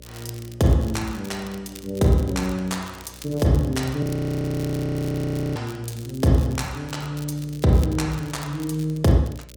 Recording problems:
hum; 60 Hz, harmonics up to 600 Hz, SNR 23 dB
crackle; vinyl, SNR 20 dB
audio freezing; at 4 s for 1.5 s

